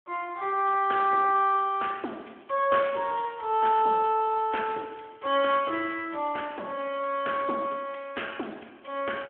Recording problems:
phone line; 280 Hz to 3.2 kHz, Speex

